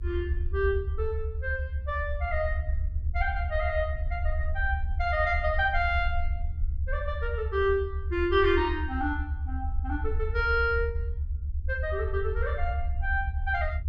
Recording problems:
low-frequency rumble; below 76 Hz, SNR 2 dB

